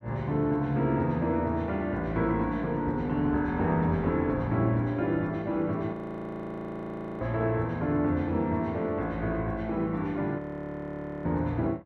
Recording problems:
audio freezing; at 6 s for 1.5 s and at 10 s for 1 s

